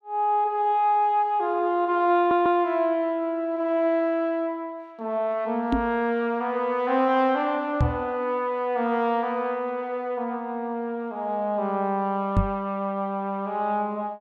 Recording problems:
audio stuttering; at 2 s
knock on the microphone; at 5.5 s, at 8 s and at 12 s; peak +6 dB vs average level

